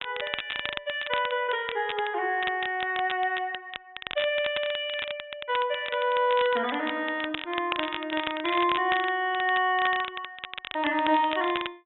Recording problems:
low-pass filter; nothing above 3.7 kHz
crackle; vinyl, SNR 9 dB

